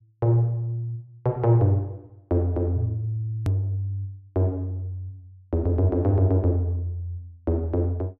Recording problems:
edit click; at 3.5 s

